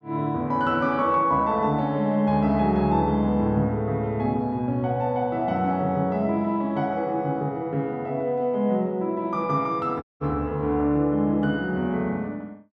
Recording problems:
dropout; at 10 s

